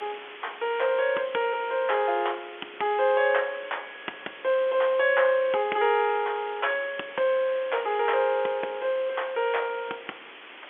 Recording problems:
telephone audio; 300 Hz to 3.4 kHz, G.711
background hiss; SNR 17 dB

